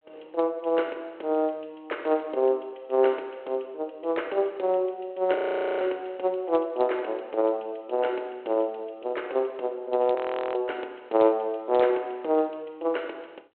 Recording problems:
telephone audio; 320 Hz to 3.3 kHz, G.726
frozen audio; at 5.5 s and at 10 s

